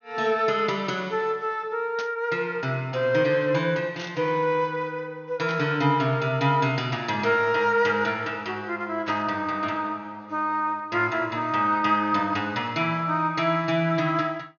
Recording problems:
treble cut off; nothing above 6.5 kHz
burst of static; 4 times, first at 2 s; peak -8 dB vs average level

